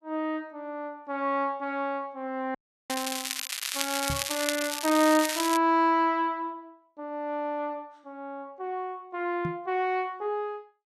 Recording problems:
audio cutting out; at 2.5 s
crackling; from 3 to 5.5 s; loose cable, SNR 2 dB
microphone thump; at 4 s and at 9.5 s; peak -1 dB vs average level

